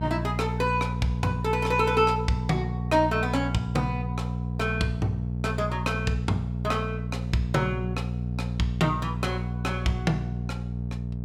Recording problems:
hum; 60 Hz, harmonics up to 480 Hz, SNR 3 dB

